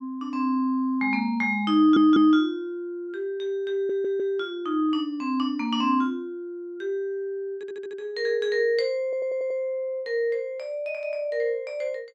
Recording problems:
stutter; 4 times, first at 2 s

